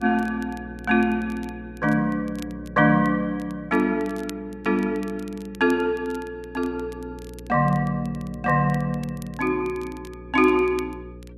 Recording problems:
electrical hum; 60 Hz, harmonics up to 540 Hz, SNR 18 dB
crackling; vinyl, SNR 26 dB

